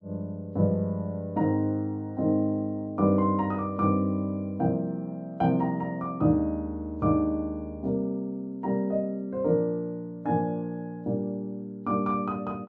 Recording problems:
none

